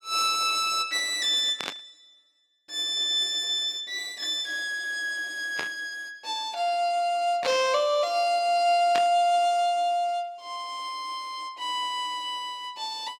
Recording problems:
burst of static; 4 times, first at 1.5 s; peak -1 dB vs average level

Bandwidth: 16.5 kHz